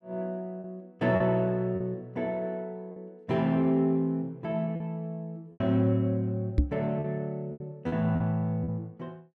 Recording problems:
packet loss; 5% of the sound replaced, filled with repeated pitch periods
microphone bump; at 6.5 s; peak +9 dB vs average level

